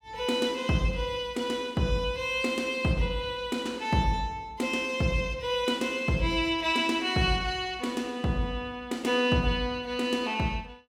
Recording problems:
none

